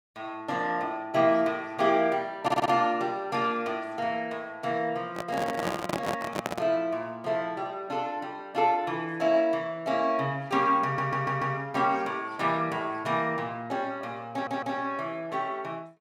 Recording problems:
stutter; at 2.5 s, at 11 s and at 14 s
handling noise; from 5 to 6.5 s; peak +2 dB vs average level

